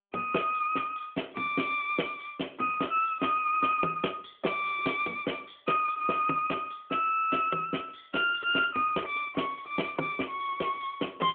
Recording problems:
phone line; 260 Hz to 3.4 kHz, AMR-NB

